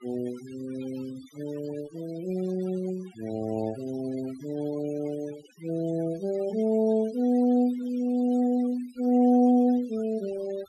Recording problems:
noise reduction artefacts; signal-to-artefact ratio 21 dB

